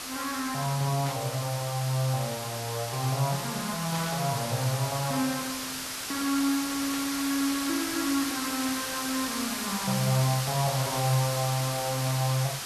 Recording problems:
background hiss; slope 0 dB per octave, SNR 3 dB
burst of static; 4 times, first at 1 s; peak -5 dB vs average level

